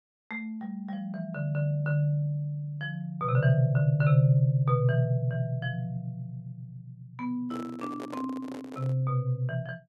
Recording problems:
handling noise; from 7.5 to 9 s; peak -8 dB vs average level

